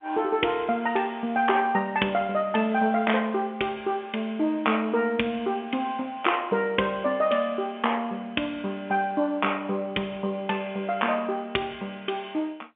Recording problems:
phone line; 190 Hz to 3.4 kHz, G.711

